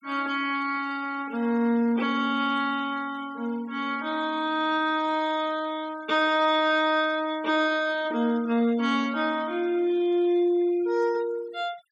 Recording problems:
noise reduction artefacts; signal-to-artefact ratio 23 dB

